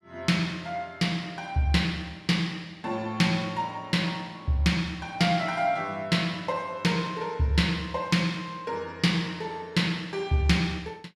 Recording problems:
none

